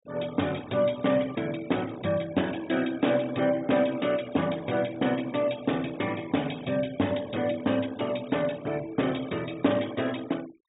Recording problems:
low-pass filter; nothing above 4 kHz
noise reduction artefacts; signal-to-artefact ratio 19 dB

